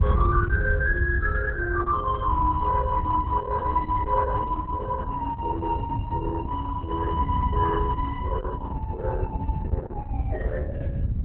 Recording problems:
lossy compression; MP2, then Opus, log-spectral distance 2 dB
rumble; below 80 Hz, SNR 1 dB
wind noise; below 120 Hz, SNR 5 dB

